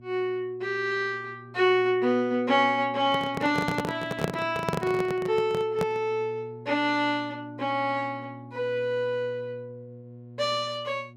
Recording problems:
electrical hum; 60 Hz, harmonics up to 720 Hz, SNR 19 dB
handling noise; from 3 to 6 s; peak +3 dB vs average level

